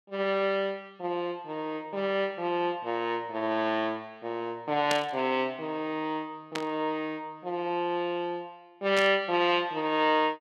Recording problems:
static burst; at 5 s, at 6.5 s and at 9 s; peak +2 dB vs average level

